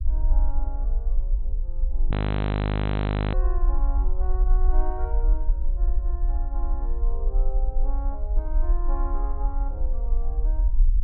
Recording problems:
low-pass filter; nothing above 4.1 kHz
rumble; below 48 Hz, SNR -13 dB
audio freezing; at 2 s for 1 s

